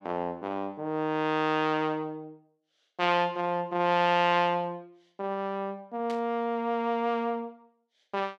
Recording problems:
burst of static; at 6 s; peak -11 dB vs average level

